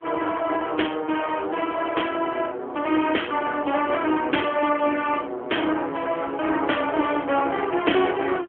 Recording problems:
phone line; 260 Hz to 3.3 kHz, AMR-NB

